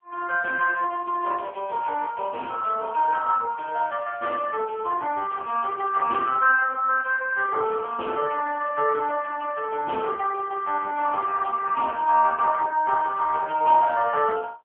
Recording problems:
phone line; 340 Hz to 2.6 kHz, AMR-NB

